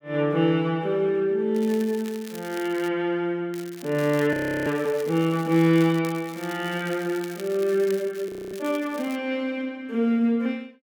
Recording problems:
crackling; from 1.5 to 3 s, from 3.5 to 6 s and from 6 to 9 s; loose cable, SNR 19 dB
frozen audio; at 4.5 s and at 8.5 s

